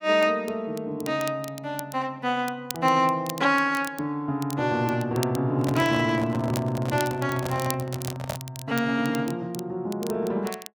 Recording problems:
crackling; vinyl, SNR 15 dB
handling noise; from 5.5 to 8.5 s; peak -2 dB vs average level

